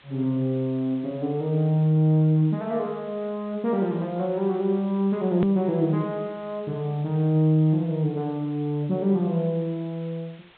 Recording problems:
treble cut off; nothing above 4 kHz
hiss; SNR 28 dB
hard cut with a click; at 5.5 s

